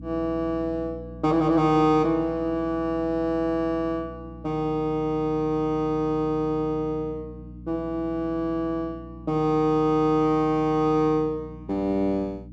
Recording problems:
mains hum; 60 Hz, harmonics up to 300 Hz, SNR 17 dB

